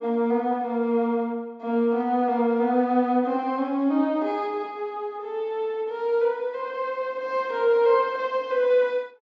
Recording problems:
low-pass filter; nothing above 8 kHz

